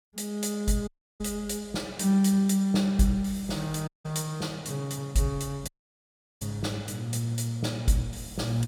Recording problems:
dropout; at 1 s, at 4 s and at 5.5 s for 0.5 s

